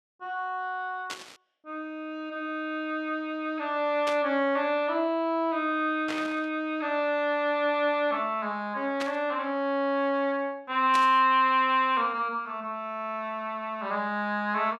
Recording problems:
burst of static; 5 times, first at 1 s; peak -3 dB vs average level

